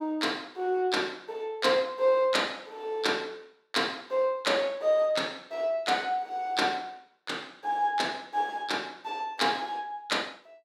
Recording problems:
none

